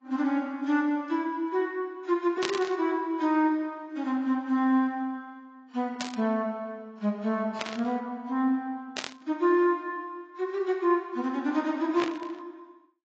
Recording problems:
lossy codec; AAC, log-spectral distance 2 dB
static burst; 5 times, first at 2.5 s; peak +2 dB vs average level

